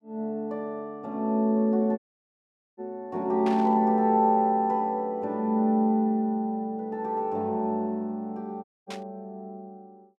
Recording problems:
audio cutting out; at 2 s for 1 s and at 8.5 s
burst of static; at 3.5 s and at 9 s; peak -9 dB vs average level

